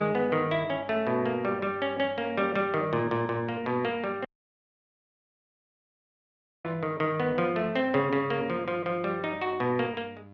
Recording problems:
lossy codec; Opus, log-spectral distance 2 dB
hum; 50 Hz, harmonics up to 1.4 kHz, SNR 22 dB
dropout; at 4.5 s for 2.5 s

